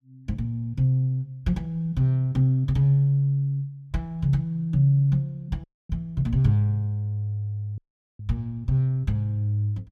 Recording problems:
audio cutting out; at 5.5 s and at 8 s

